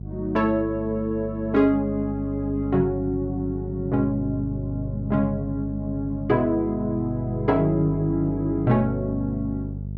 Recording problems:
hum; 50 Hz, harmonics up to 450 Hz, SNR 8 dB

